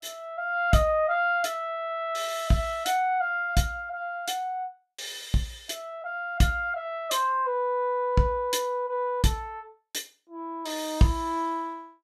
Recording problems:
none

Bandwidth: 14.5 kHz